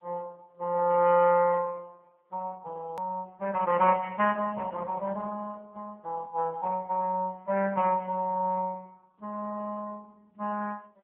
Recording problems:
telephone audio; 260 Hz to 2.8 kHz, AMR-NB
hard cut with a click; at 3 s

